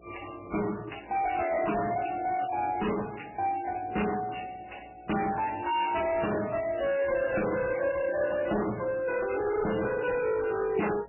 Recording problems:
codec artefacts; MP3, then MP3, log-spectral distance 8 dB, nothing above 2.8 kHz
distorted audio; soft clipping, signal-to-distortion ratio 6 dB
hum; 60 Hz, harmonics up to 720 Hz, SNR 26 dB

